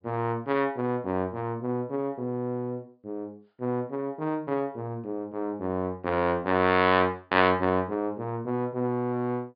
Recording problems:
treble cut off; nothing above 5.1 kHz

